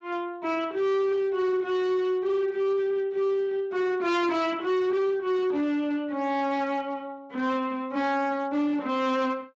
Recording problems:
codec artefacts; Speex, log-spectral distance 2 dB
distorted audio; hard clipping, signal-to-distortion ratio 10 dB

